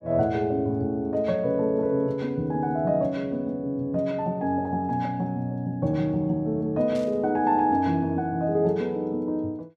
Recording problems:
burst of static; at 7 s; peak -14 dB vs average level

